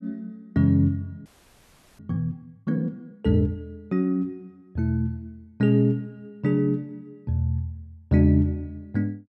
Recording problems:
audio freezing; at 1.5 s for 0.5 s

